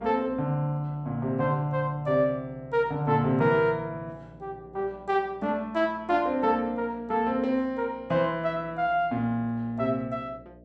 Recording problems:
mains hum; 60 Hz, harmonics up to 660 Hz, SNR 24 dB

